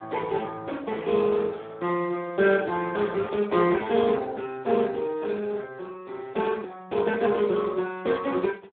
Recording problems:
telephone audio; 220 Hz to 3.7 kHz, Speex

